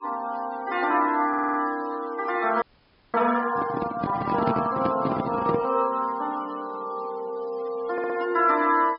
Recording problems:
low-pass filter; nothing above 5.5 kHz
noise reduction artefacts; signal-to-artefact ratio 20 dB
audio stuttering; at 1.5 s and at 8 s
audio freezing; at 2.5 s for 0.5 s
handling noise; from 3.5 to 5.5 s; peak +2 dB vs average level

